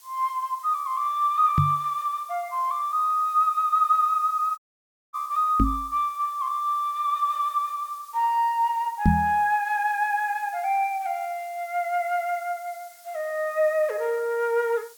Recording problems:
background hiss; slope +3 dB per octave, SNR 24 dB
knock on the microphone; at 1.5 s, at 5.5 s and at 9 s; peak +8 dB vs average level
audio cutting out; at 4.5 s for 0.5 s

